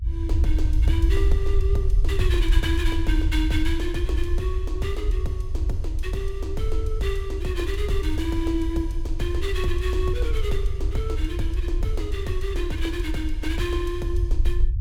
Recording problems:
low-frequency rumble; below 66 Hz, SNR -4 dB

